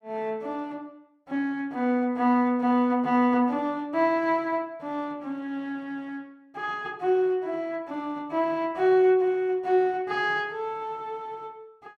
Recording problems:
none

